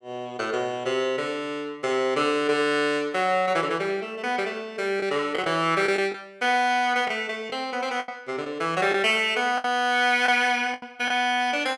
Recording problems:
packet loss; 4% of the sound replaced, filled with the last packet

